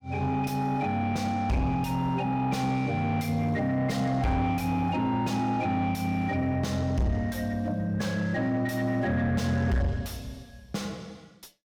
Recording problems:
distorted audio; soft clipping, signal-to-distortion ratio 8 dB

